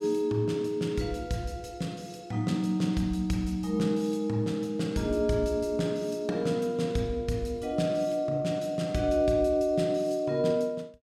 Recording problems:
none

